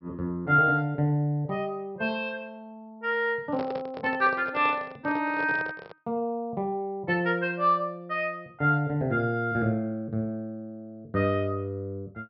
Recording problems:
low-pass filter; nothing above 5.5 kHz
handling noise; from 3.5 to 6 s; peak -4 dB vs average level

